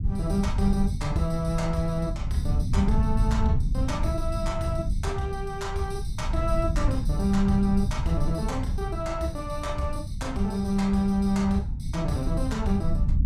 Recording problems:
low-frequency rumble; below 110 Hz, SNR 2 dB

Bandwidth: 15 kHz